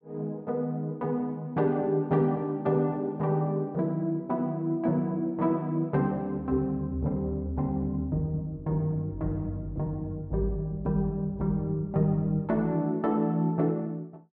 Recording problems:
none

